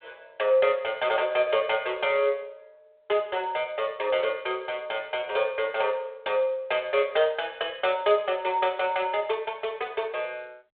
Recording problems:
telephone audio; 340 Hz to 3.6 kHz, G.726

